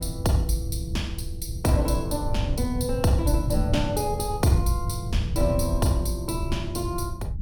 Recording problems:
rumble; below 110 Hz, SNR 3 dB

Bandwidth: 17.5 kHz